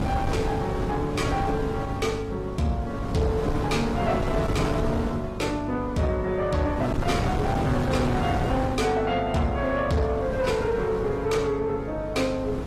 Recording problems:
lossy codec; AAC, log-spectral distance 2 dB
distortion; soft clipping, signal-to-distortion ratio 11 dB
hum; 50 Hz, harmonics up to 400 Hz, SNR 12 dB
wind on the microphone; below 530 Hz, SNR 4 dB

